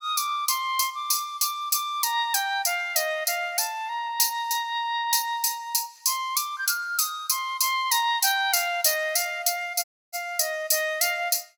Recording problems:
audio cutting out; at 10 s

